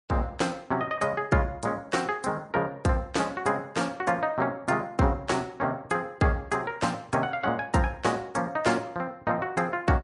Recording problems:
codec artefacts; MP3, log-spectral distance 2 dB, nothing above 10.4 kHz

